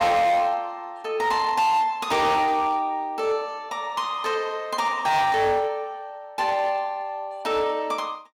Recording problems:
distortion; hard clipping, signal-to-distortion ratio 10 dB

